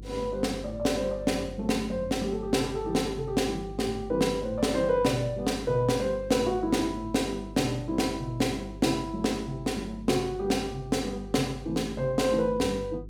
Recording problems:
hum; 50 Hz, harmonics up to 400 Hz, SNR 15 dB

